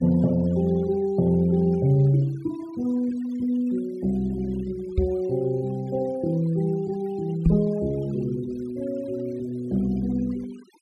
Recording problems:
denoising artefacts; signal-to-artefact ratio 25 dB
knock on the microphone; at 5 s and at 7.5 s; peak +7 dB vs average level

